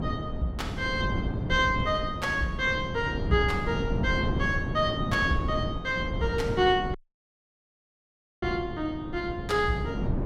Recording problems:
wind noise; below 270 Hz, SNR 4 dB
audio cutting out; at 7 s for 1.5 s

